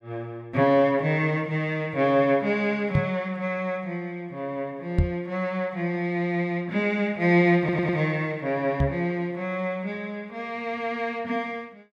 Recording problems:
microphone bump; at 3 s, at 5 s and at 9 s; peak +7 dB vs average level
stutter; at 7.5 s

